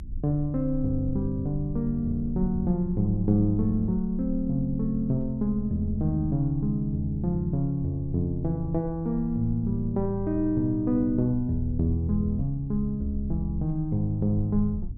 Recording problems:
low-frequency rumble; below 66 Hz, strongest tone 22 Hz, SNR 13 dB

